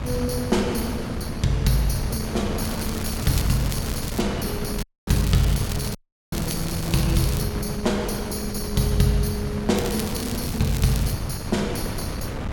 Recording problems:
wind noise; below 420 Hz, SNR 5 dB
crackle; from 2.5 to 4 s, from 5 to 7.5 s and from 10 to 11 s; loose cable, SNR 10 dB
dropout; at 5 s and at 6 s

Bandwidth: 18 kHz